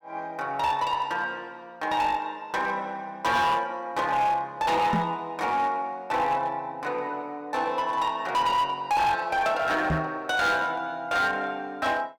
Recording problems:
distortion; hard clipping, uneven, signal-to-distortion ratio 11 dB
knock on the microphone; at 5 s and at 10 s; peak +3 dB vs average level

